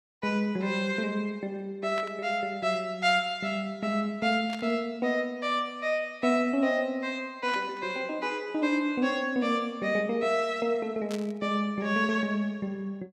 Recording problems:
static burst; 4 times, first at 2 s; peak -8 dB vs average level

